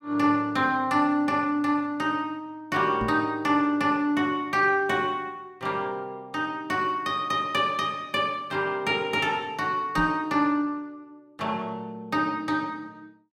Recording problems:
knock on the microphone; at 3 s and at 10 s; peak -2 dB vs average level

